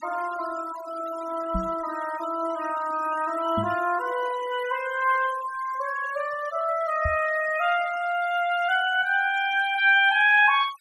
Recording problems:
denoising artefacts; signal-to-artefact ratio 17 dB
microphone thump; at 1.5 s, at 3.5 s and at 7 s; peak -2 dB vs average level

